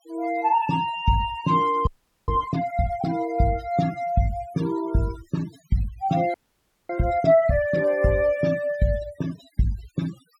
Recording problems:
denoising artefacts; signal-to-artefact ratio 19 dB
frozen audio; at 2 s and at 6.5 s for 0.5 s

